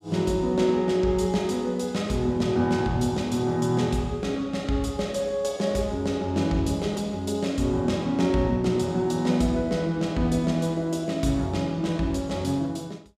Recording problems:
none

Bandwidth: 15.5 kHz